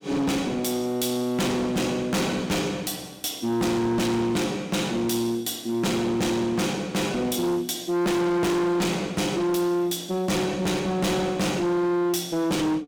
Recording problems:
distorted audio; hard clipping, uneven, signal-to-distortion ratio 6 dB

